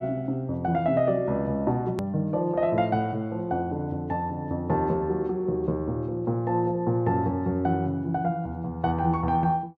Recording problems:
hard cut with a click; at 2 s

